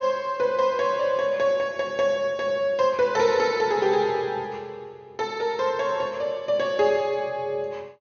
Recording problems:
treble cut off; nothing above 6.6 kHz

